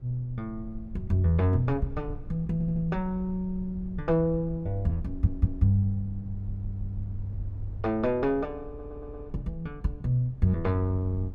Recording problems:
low-frequency rumble; below 72 Hz, SNR 13 dB
stutter; 4 times, first at 2.5 s

